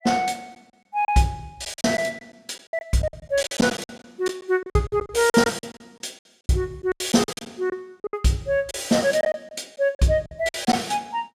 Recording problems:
packet loss; 15% of the sound replaced, filled with silence

